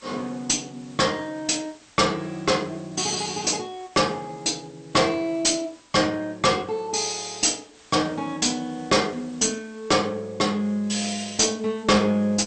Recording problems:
lossy compression; MP2, log-spectral distance 8 dB, nothing above 8.2 kHz
distortion; hard clipping, uneven, signal-to-distortion ratio 11 dB
hiss; slope -1 dB per octave, SNR 27 dB

